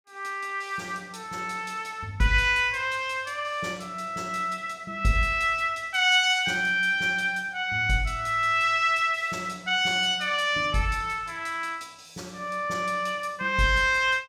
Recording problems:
none

